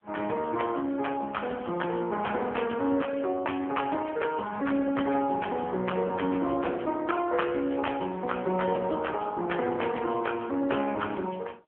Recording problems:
telephone audio; 240 Hz to 3.2 kHz, AMR-NB

